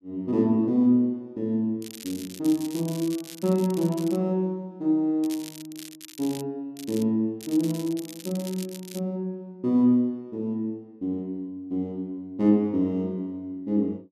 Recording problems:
crackling; 4 times, first at 2 s; loose cable, SNR 16 dB

